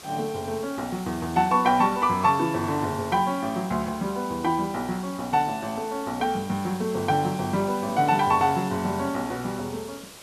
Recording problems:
hiss; slope -2 dB per octave, SNR 17 dB

